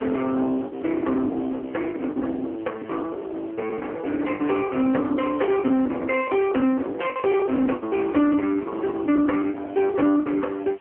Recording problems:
telephone audio; 220 Hz to 3.2 kHz, AMR-NB
distorted audio; soft clipping, signal-to-distortion ratio 8 dB
background hiss; SNR 20 dB
packet loss; 15% of the sound replaced, filled with the last packet

